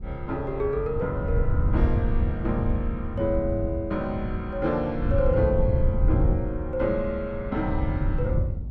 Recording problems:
wind on the microphone; below 110 Hz, SNR 0 dB

